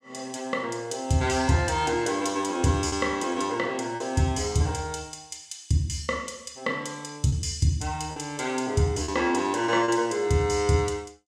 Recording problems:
lost packets; 3% of the sound replaced, filled with repeated pitch periods

